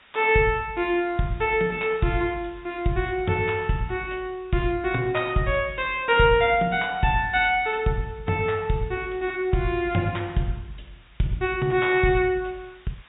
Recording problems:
treble missing; nothing above 4 kHz
hiss; SNR 30 dB

